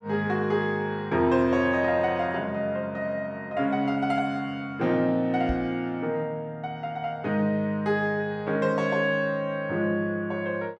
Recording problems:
microphone bump; at 5.5 s; peak -1 dB vs average level

